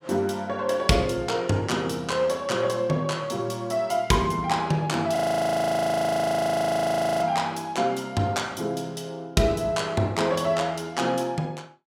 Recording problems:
audio freezing; at 5 s for 2 s

